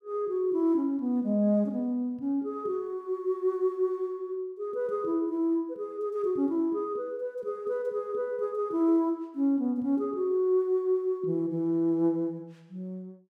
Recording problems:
none

